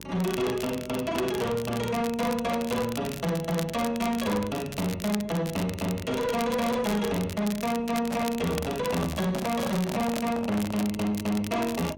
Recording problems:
distorted audio; soft clipping, signal-to-distortion ratio 10 dB
hum; 50 Hz, harmonics up to 1.1 kHz, SNR 21 dB
crackle; vinyl, SNR 12 dB
handling noise; from 8 to 11 s; peak 0 dB vs average level

